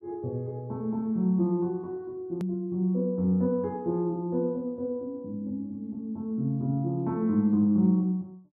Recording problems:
hard cut with a click; at 2.5 s

